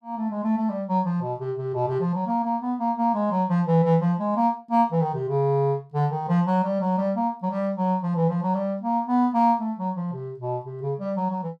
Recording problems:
none

